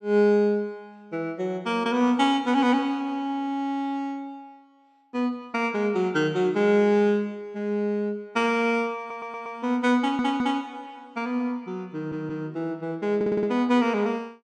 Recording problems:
audio stuttering; 4 times, first at 9 s

